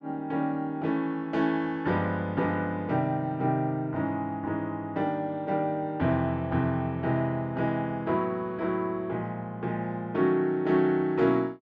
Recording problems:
none

